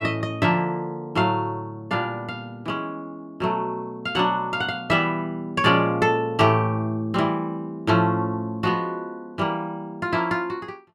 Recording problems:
none

